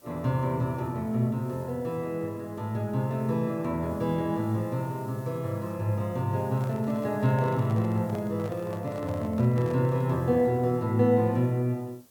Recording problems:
background hiss; SNR 27 dB
microphone handling noise; from 6.5 to 10 s; peak -11 dB vs average level

